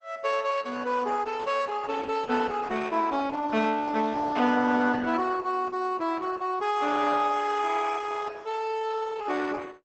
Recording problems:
lossy compression; Opus, log-spectral distance 4 dB, nothing above 8 kHz

